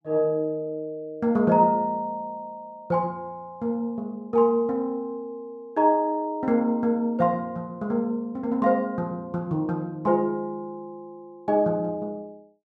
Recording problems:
none

